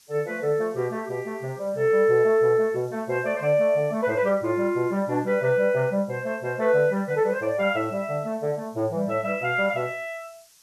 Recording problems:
hiss; SNR 29 dB

